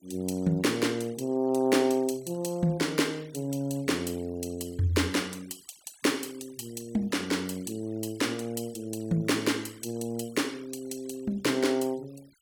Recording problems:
noise reduction artefacts; signal-to-artefact ratio 23 dB

